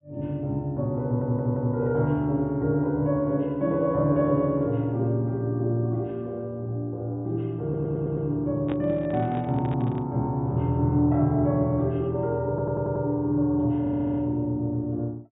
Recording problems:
treble missing; nothing above 4 kHz
audio stuttering; 4 times, first at 1 s
handling noise; from 8.5 to 10 s; peak -4 dB vs average level

